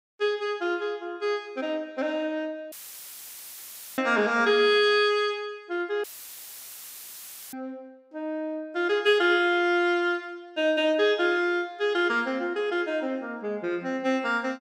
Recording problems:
dropout; at 2.5 s for 1.5 s and at 6 s for 1.5 s; filled with static

